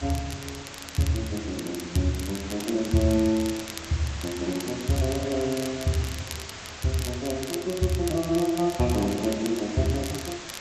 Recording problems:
codec artefacts; G.722, log-spectral distance 12 dB
background hiss; slope -1 dB per octave, SNR 11 dB
crackling; vinyl, SNR 13 dB

